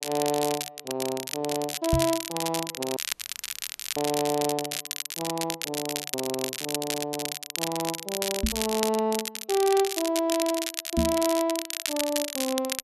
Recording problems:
crackling; vinyl, SNR 3 dB
microphone thump; at 2 s, at 8.5 s and at 11 s; peak +8 dB vs average level
audio cutting out; at 3 s for 1 s

